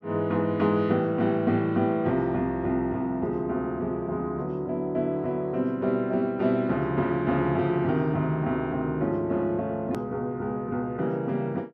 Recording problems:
click at an edit; at 10 s

